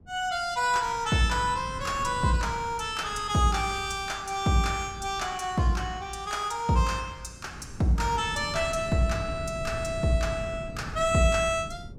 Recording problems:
wind noise; below 190 Hz, SNR 14 dB

